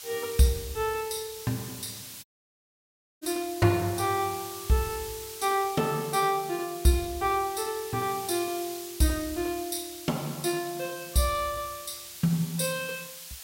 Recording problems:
hiss; slope +3 dB per octave, SNR 11 dB
audio cutting out; at 2 s for 1 s

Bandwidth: 16 kHz